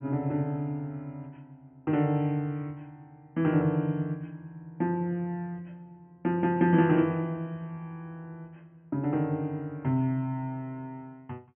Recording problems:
treble cut off; nothing above 3.2 kHz

